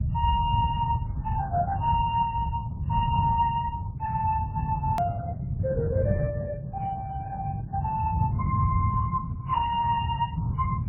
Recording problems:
lossy codec; Opus, then MP3, log-spectral distance 2 dB, nothing above 2.8 kHz
rumble; below 140 Hz, SNR 1 dB
hard cut with a click; at 5 s

